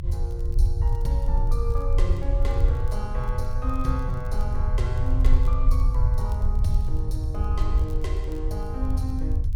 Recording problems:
low-frequency rumble; below 70 Hz, SNR -7 dB
crackle; vinyl, SNR 26 dB

